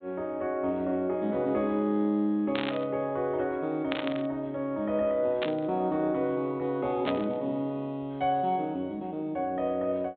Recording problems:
treble missing; nothing above 4 kHz
burst of static; 4 times, first at 2.5 s; peak 0 dB vs average level

